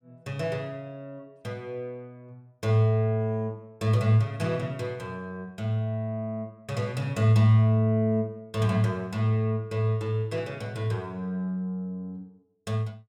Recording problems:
none

